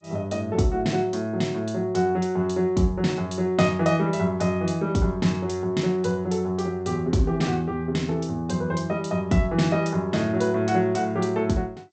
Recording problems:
lossy codec; G.722, log-spectral distance 2 dB, nothing above 8 kHz

